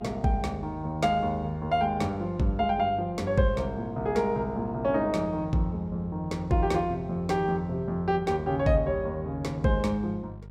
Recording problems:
hum; 50 Hz, harmonics up to 600 Hz, SNR 18 dB

